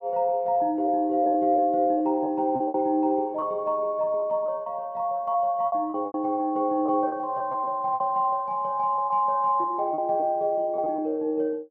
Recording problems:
packet loss; 8% of the sound replaced, filled with repeated pitch periods

